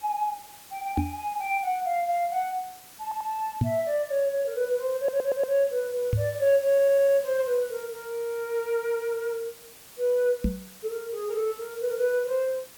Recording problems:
hiss; slope -1 dB per octave, SNR 19 dB
knock on the microphone; 4 times, first at 1 s; peak +6 dB vs average level
audio stuttering; at 3 s, at 5 s and at 6.5 s

